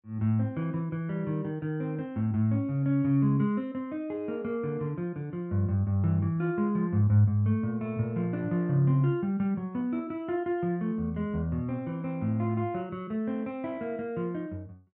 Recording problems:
none

